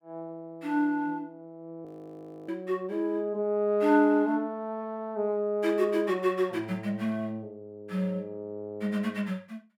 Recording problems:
audio freezing; at 2 s for 0.5 s

